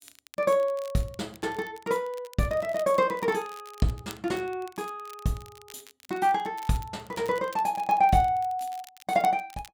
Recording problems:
crackle; vinyl, SNR 23 dB

